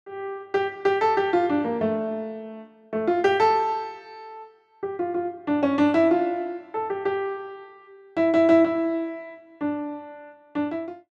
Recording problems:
none

